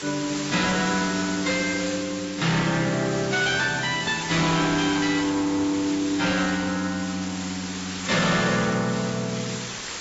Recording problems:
codec artefacts; AAC, log-spectral distance 18 dB, nothing above 7.6 kHz
distorted audio; hard clipping, signal-to-distortion ratio 7 dB
hiss; SNR 8 dB

